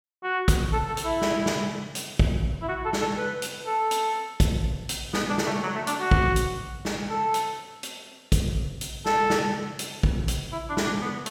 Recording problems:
none

